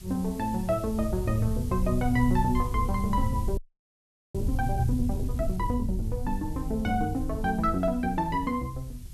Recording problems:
hiss; slope +2 dB per octave, SNR 21 dB
wind on the microphone; below 84 Hz, SNR 5 dB
audio freezing; at 3.5 s for 1 s

